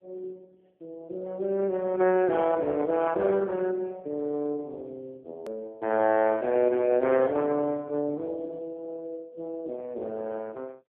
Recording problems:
phone line; 220 Hz to 3.3 kHz, AMR-NB
edit click; at 5.5 s

